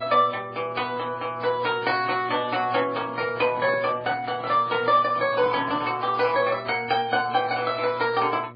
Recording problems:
codec artefacts; MP3, then AAC, log-spectral distance 3 dB, nothing above 4.8 kHz
mains hum; 60 Hz, harmonics up to 1.3 kHz, SNR 21 dB
microphone handling noise; from 3 to 6 s; peak -8 dB vs average level

